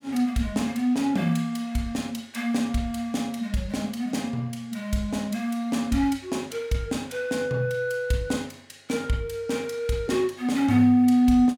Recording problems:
none

